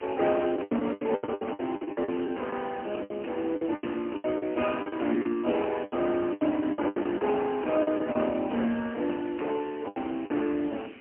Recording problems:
telephone audio; 220 Hz to 3.1 kHz, AMR-NB, then MP3
distorted audio; hard clipping, signal-to-distortion ratio 12 dB
hiss; SNR 21 dB
wind on the microphone; below 450 Hz, SNR 22 dB
lost packets; 15% of the sound replaced, filled with the last packet

